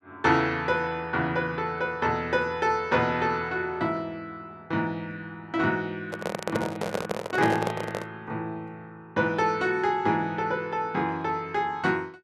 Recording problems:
microphone handling noise; from 6 to 8 s; peak +3 dB vs average level

